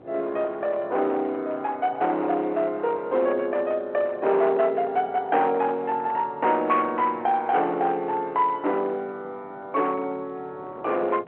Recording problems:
phone line; 340 Hz to 3.2 kHz, G.711
distorted audio; hard clipping, uneven, signal-to-distortion ratio 15 dB
wind on the microphone; below 1.2 kHz, SNR 20 dB

